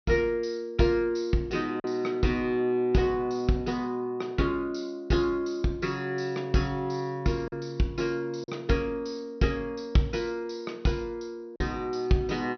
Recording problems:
low-pass filter; nothing above 6 kHz
lost packets; 1.3% of the sound replaced, filled with silence

